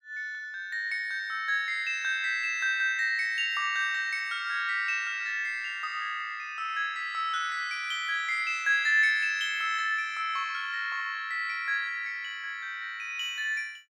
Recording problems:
none

